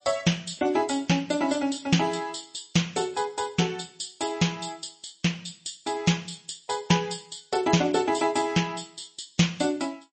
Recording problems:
codec artefacts; MP3, log-spectral distance 8 dB, nothing above 8.2 kHz

